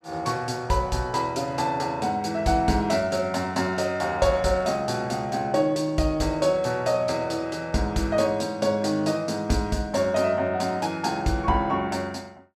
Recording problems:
none

